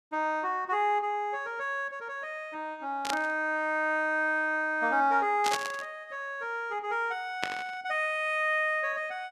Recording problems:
static burst; at 3 s, at 5.5 s and at 7.5 s; peak +3 dB vs average level

